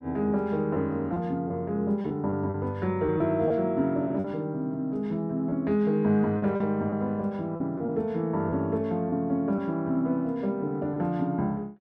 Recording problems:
packet loss; 5% of the sound replaced, filled with repeated pitch periods

